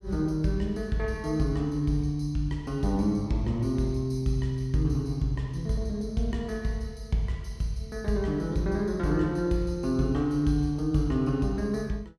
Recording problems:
none

